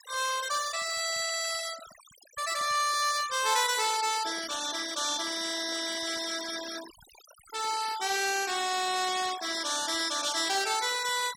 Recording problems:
denoising artefacts; signal-to-artefact ratio 11 dB

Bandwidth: 17 kHz